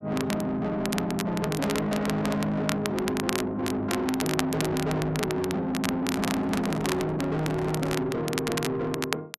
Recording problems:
distortion; soft clipping, signal-to-distortion ratio 8 dB
crackle; vinyl, SNR 7 dB
handling noise; from 6 to 8 s; peak 0 dB vs average level

